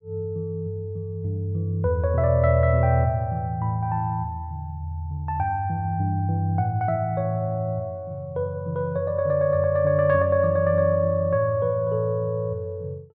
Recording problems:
none

